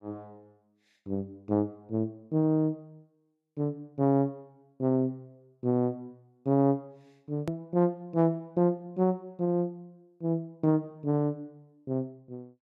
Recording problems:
edit click; at 7.5 s

